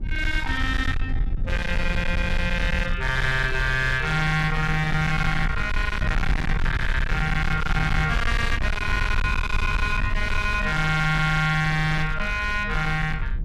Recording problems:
distorted audio; hard clipping, uneven, signal-to-distortion ratio 8 dB
low-frequency rumble; below 86 Hz, SNR 5 dB

